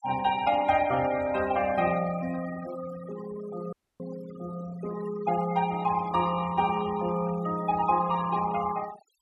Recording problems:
denoising artefacts; signal-to-artefact ratio 16 dB
audio cutting out; at 3.5 s

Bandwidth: 13.5 kHz